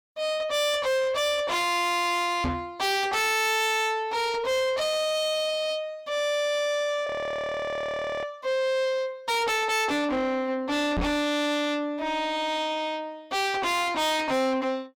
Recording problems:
distorted audio; soft clipping, signal-to-distortion ratio 7 dB
microphone thump; at 2.5 s and at 11 s; peak +1 dB vs average level
frozen audio; at 7 s for 1 s

